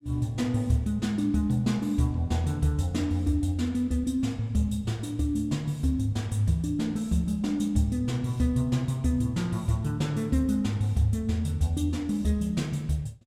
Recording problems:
none

